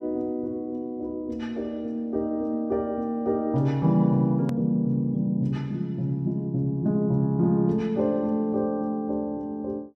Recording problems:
click at an edit; at 4.5 s

